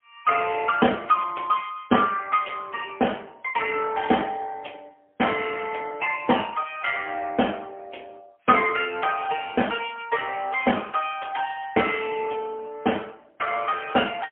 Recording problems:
telephone audio; 260 Hz to 3.1 kHz, AMR-NB, then MP3

